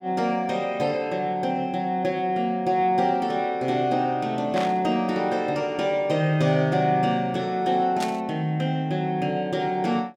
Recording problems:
burst of static; at 4.5 s and at 8 s; peak -4 dB vs average level

